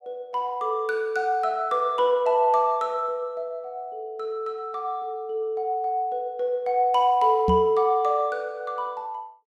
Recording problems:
microphone thump; at 7.5 s; peak +3 dB vs average level

